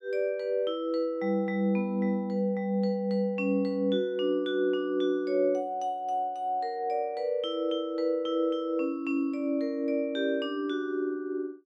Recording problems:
none

